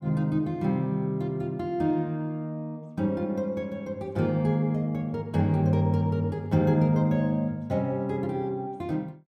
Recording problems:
none

